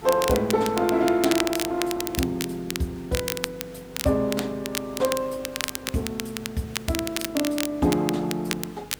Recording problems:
lossy compression; Opus, log-spectral distance 2 dB
hum; 50 Hz, harmonics up to 500 Hz, SNR 22 dB
hiss; slope -2 dB per octave, SNR 22 dB
crackle; vinyl, SNR 6 dB

